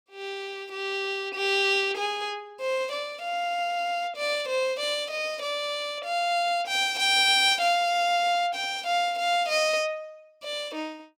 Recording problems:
none

